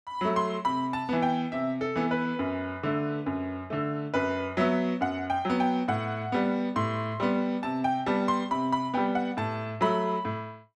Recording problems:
none

